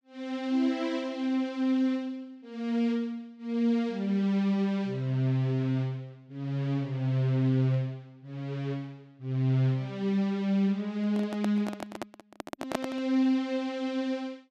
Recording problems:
microphone handling noise; from 11 to 13 s; peak +3 dB vs average level

